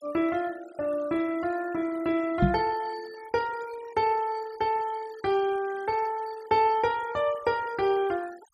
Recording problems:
denoising artefacts; signal-to-artefact ratio 19 dB
microphone bump; at 2.5 s; peak +8 dB vs average level

